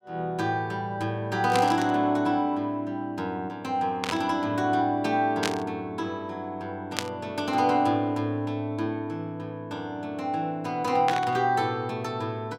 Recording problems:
static burst; 5 times, first at 1.5 s; peak +4 dB vs average level

